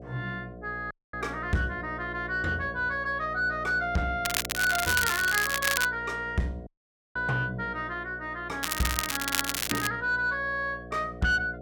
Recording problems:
distorted audio; soft clipping, signal-to-distortion ratio 7 dB
electrical hum; 60 Hz, harmonics up to 720 Hz, SNR 14 dB
dropout; at 1 s and at 6.5 s
crackling; from 4 to 6 s and from 8.5 to 10 s; loose cable, SNR 1 dB

